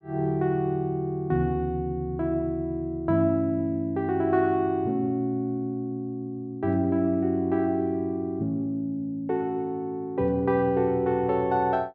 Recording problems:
none

